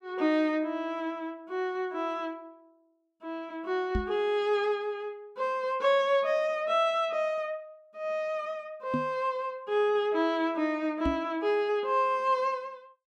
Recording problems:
knock on the microphone; at 4 s, at 9 s and at 11 s; peak +2 dB vs average level

